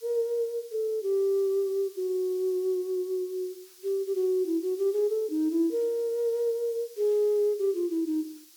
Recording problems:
hiss; slope +4 dB per octave, SNR 23 dB

